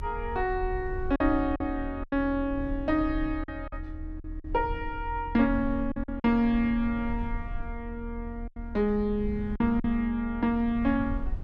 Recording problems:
rumble; below 78 Hz, strongest tone 36 Hz, SNR 10 dB
packet loss; 5% of the sound replaced, filled with silence

